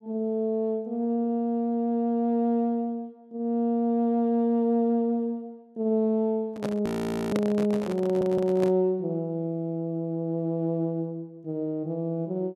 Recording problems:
microphone handling noise; from 6.5 to 8.5 s; peak 0 dB vs average level
audio freezing; at 7 s
stutter; at 8 s

